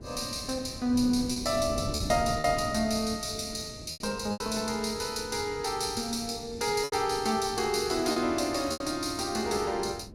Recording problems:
wind noise; below 280 Hz, SNR 13 dB
packet loss; 5% of the sound replaced, filled with repeated pitch periods

